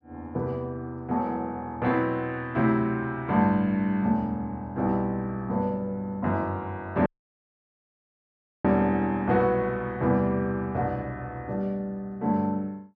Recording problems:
audio cutting out; at 7 s for 1.5 s

